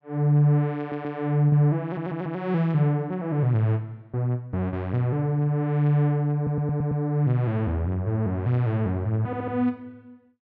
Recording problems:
stutter; 4 times, first at 1 s

